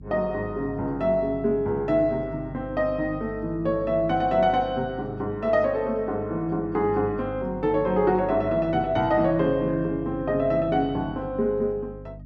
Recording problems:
mains hum; 50 Hz, harmonics up to 300 Hz, SNR 16 dB

